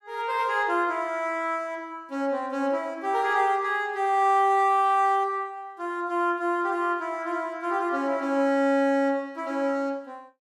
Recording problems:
none

